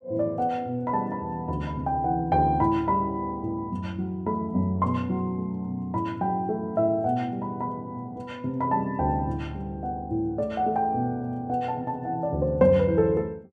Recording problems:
none

